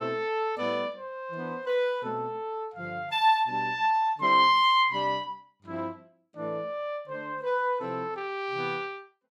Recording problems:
none

